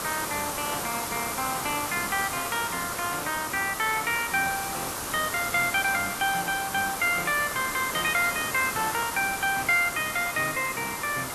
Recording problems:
hiss; SNR 4 dB

